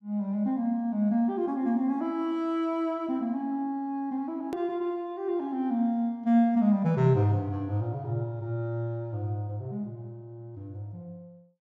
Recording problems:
edit click; at 4.5 s

